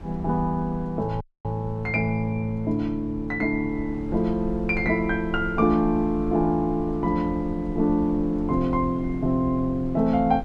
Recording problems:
wind on the microphone; below 98 Hz, SNR 14 dB
dropout; at 1 s

